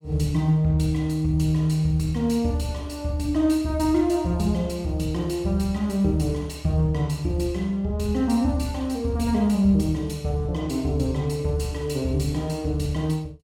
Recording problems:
none

